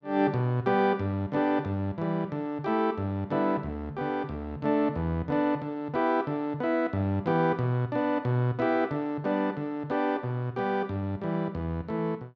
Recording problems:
none

